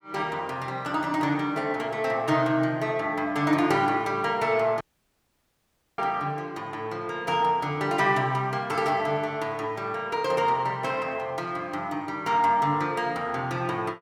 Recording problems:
audio cutting out; at 5 s for 1 s

